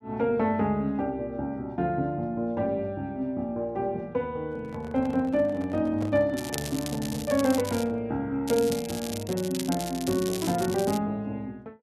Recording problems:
microphone handling noise; from 4.5 to 8 s; peak -7 dB vs average level
crackling; from 6.5 to 8 s and from 8.5 to 11 s; loose cable, SNR 10 dB

